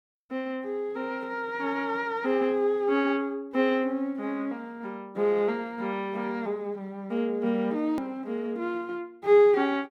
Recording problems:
click at an edit; at 8 s

